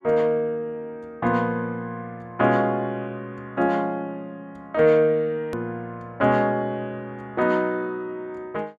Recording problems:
edit click; at 5.5 s

